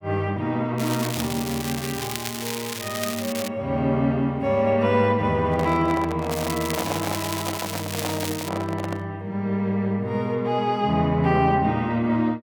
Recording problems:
crackling; from 1 to 3.5 s and from 6.5 to 8.5 s; loose cable, SNR 7 dB
handling noise; from 5.5 to 9 s; peak 0 dB vs average level

